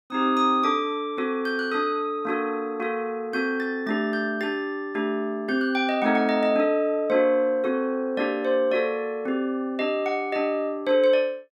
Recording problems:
none

